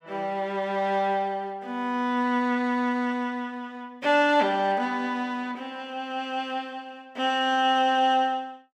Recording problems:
none

